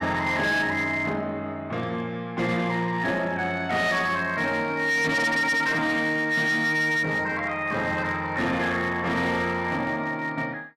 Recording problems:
distortion; hard clipping, signal-to-distortion ratio 12 dB

